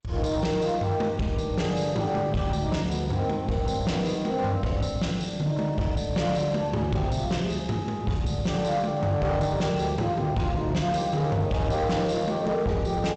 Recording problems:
lossy compression; G.722, log-spectral distance 2 dB, nothing above 8 kHz
distorted audio; hard clipping, signal-to-distortion ratio 11 dB

